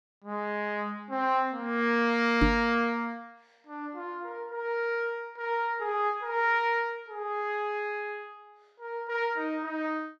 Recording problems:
microphone bump; at 2.5 s; peak +8 dB vs average level

